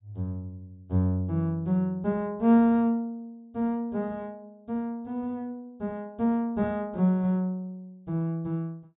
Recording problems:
low-pass filter; nothing above 4 kHz

